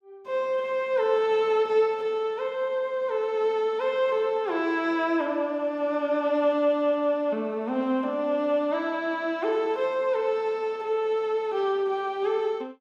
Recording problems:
none

